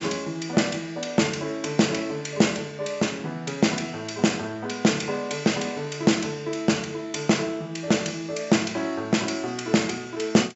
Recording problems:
treble cut off; nothing above 7.6 kHz

